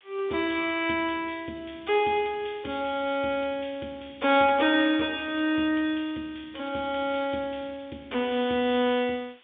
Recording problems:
telephone audio; 170 Hz to 3.6 kHz, G.711
hiss; SNR 30 dB

